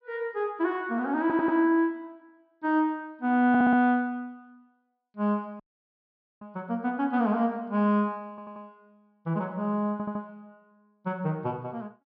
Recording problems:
low-pass filter; nothing above 5.7 kHz
audio stuttering; 4 times, first at 1 s
audio cutting out; at 5.5 s for 1 s

